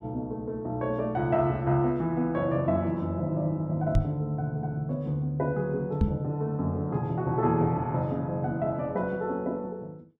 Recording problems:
microphone thump; at 4 s and at 6 s; peak +7 dB vs average level

